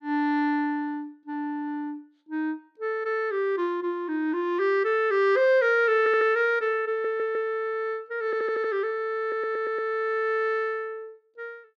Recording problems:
stutter; 4 times, first at 6 s

